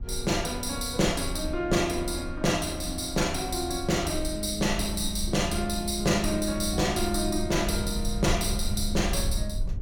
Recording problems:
rumble; below 72 Hz, SNR 9 dB

